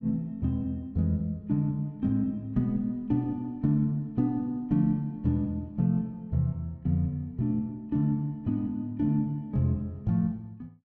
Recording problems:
none

